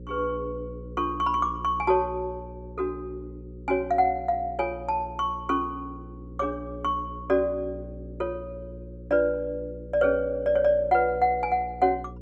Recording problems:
hum; 60 Hz, harmonics up to 540 Hz, SNR 15 dB

